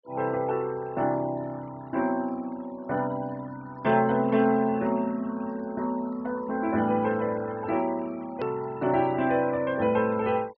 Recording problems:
low-pass filter; nothing above 5.5 kHz
denoising artefacts; signal-to-artefact ratio 22 dB
hard cut with a click; at 8.5 s

